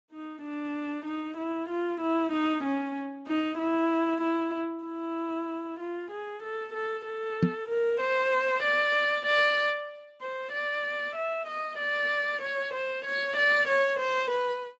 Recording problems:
lossy codec; Speex, log-spectral distance 3 dB, nothing above 7.3 kHz
microphone thump; at 7.5 s; peak +8 dB vs average level

